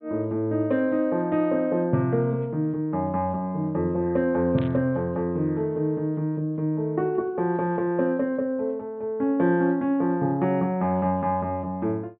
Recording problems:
low-pass filter; nothing above 4 kHz
static burst; at 4.5 s; peak -13 dB vs average level

